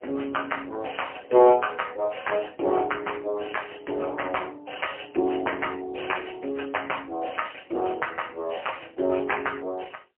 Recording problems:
phone line; 300 Hz to 3.1 kHz, AMR-NB, then MP3

